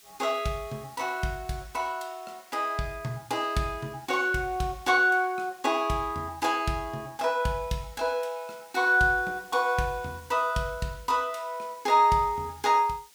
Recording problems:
background hiss; slope +3 dB per octave, SNR 25 dB

